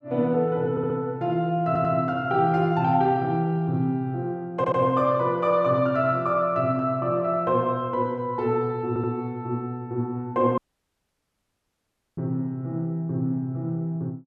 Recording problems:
stutter; 4 times, first at 0.5 s
dropout; at 11 s for 1.5 s

